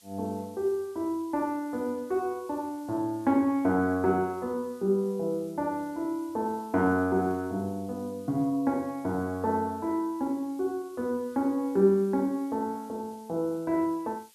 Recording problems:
background hiss; slope +3 dB per octave, SNR 27 dB

